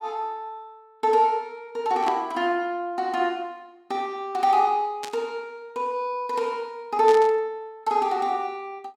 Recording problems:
burst of static; at 2 s, at 5 s and at 7 s; peak -6 dB vs average level

